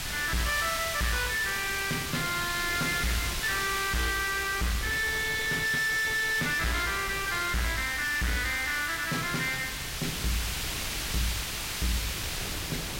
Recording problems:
distorted audio; soft clipping, signal-to-distortion ratio 6 dB
hiss; SNR 4 dB
wind noise; below 470 Hz, SNR 13 dB

